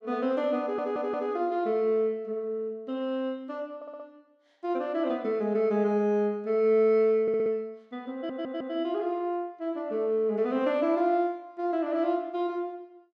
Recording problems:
audio stuttering; 4 times, first at 0.5 s

